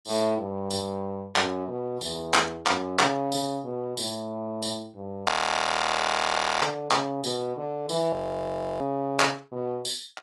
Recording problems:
lossy compression; AAC, log-spectral distance 3 dB, nothing above 11.3 kHz
audio freezing; at 5.5 s for 1.5 s and at 8 s for 0.5 s

